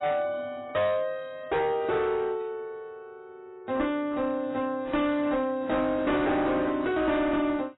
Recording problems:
codec artefacts; AAC, log-spectral distance 2 dB, nothing above 3.8 kHz
distortion; hard clipping, uneven, signal-to-distortion ratio 10 dB

